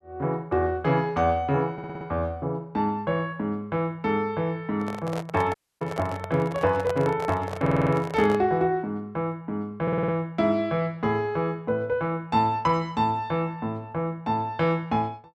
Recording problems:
stutter; at 1.5 s, at 7.5 s and at 10 s
microphone handling noise; from 5 to 8.5 s; peak -2 dB vs average level
audio cutting out; at 5.5 s

